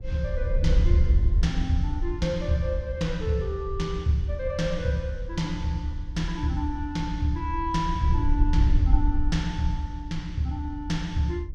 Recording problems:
wind on the microphone; below 68 Hz, SNR 1 dB

